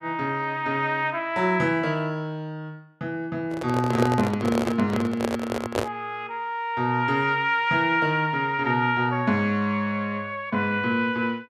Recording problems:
microphone handling noise; from 3.5 to 6 s; peak +4 dB vs average level

